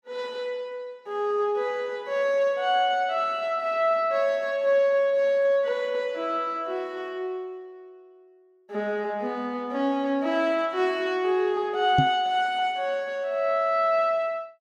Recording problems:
microphone thump; at 12 s; peak +5 dB vs average level

